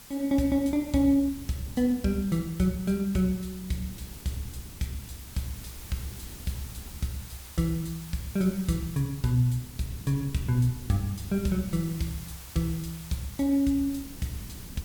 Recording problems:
background hiss; slope 0 dB per octave, SNR 16 dB
wind noise; below 200 Hz, SNR 20 dB

